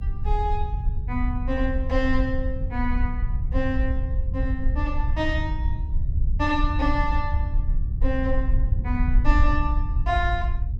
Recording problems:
rumble; below 68 Hz, SNR -2 dB

